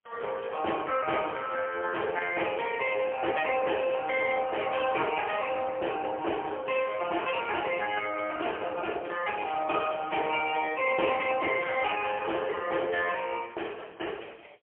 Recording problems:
phone line; 340 Hz to 3.3 kHz, AMR-NB, then MP3

